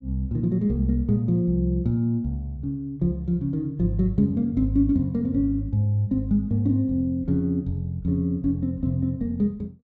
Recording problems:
treble cut off; nothing above 8 kHz

